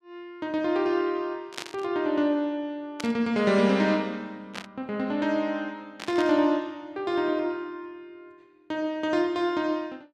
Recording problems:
static burst; 4 times, first at 1.5 s; peak -3 dB vs average level

